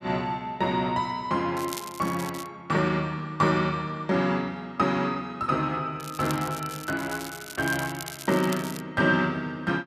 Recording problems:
crackle; at 1.5 s and from 6 to 9 s; loose cable, SNR 13 dB

